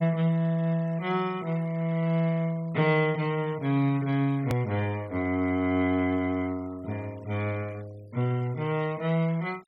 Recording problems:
denoising artefacts; signal-to-artefact ratio 24 dB
click at an edit; at 4.5 s

